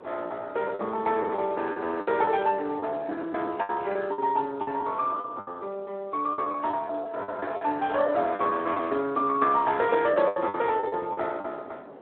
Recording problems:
telephone audio; 260 Hz to 3.8 kHz, Speex
wind on the microphone; below 780 Hz, SNR 21 dB
lost packets; 10% of the sound replaced, filled with the last packet

